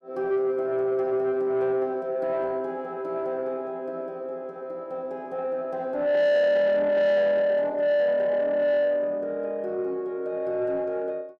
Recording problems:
distortion; soft clipping, signal-to-distortion ratio 11 dB

